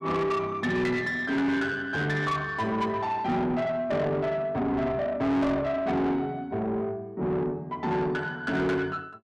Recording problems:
distortion; soft clipping, signal-to-distortion ratio 8 dB

